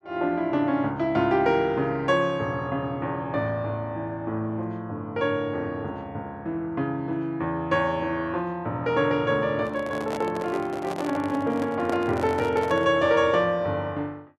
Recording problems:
handling noise; from 9.5 to 13 s; peak -3 dB vs average level

